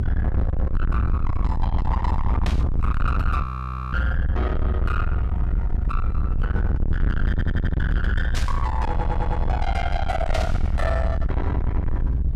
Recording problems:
distorted audio; soft clipping, signal-to-distortion ratio 5 dB
low-frequency rumble; below 92 Hz, SNR -5 dB
static burst; at 2.5 s, at 8.5 s and at 10 s; peak +2 dB vs average level
audio freezing; at 3.5 s for 0.5 s
stutter; at 7.5 s and at 9 s

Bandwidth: 14.5 kHz